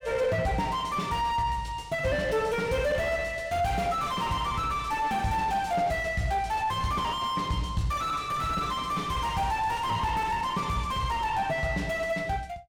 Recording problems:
distorted audio; soft clipping, signal-to-distortion ratio 5 dB

